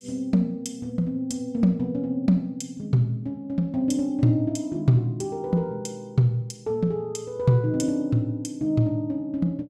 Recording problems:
none

